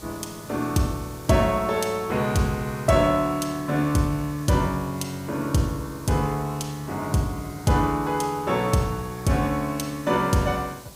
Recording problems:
background hiss; SNR 19 dB

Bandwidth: 15.5 kHz